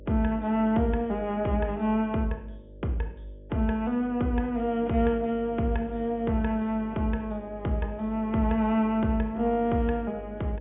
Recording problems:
low-pass filter; nothing above 3.6 kHz
mains hum; 50 Hz, harmonics up to 600 Hz, SNR 19 dB

